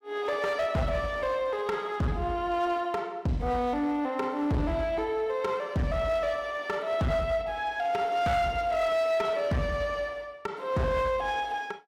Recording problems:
distortion; hard clipping, signal-to-distortion ratio 10 dB

